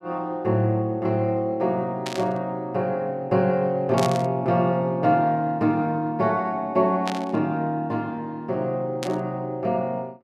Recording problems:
burst of static; 4 times, first at 2 s; peak -2 dB vs average level

